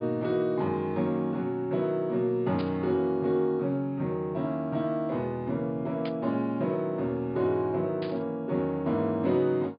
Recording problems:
low-pass filter; nothing above 4.8 kHz
burst of static; at 2.5 s, at 6 s and at 8 s; peak -9 dB vs average level

